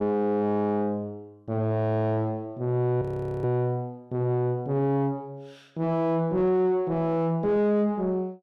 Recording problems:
distortion; soft clipping, signal-to-distortion ratio 6 dB
frozen audio; at 3 s

